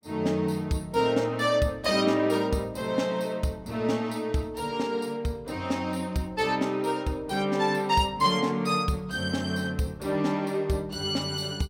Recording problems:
none

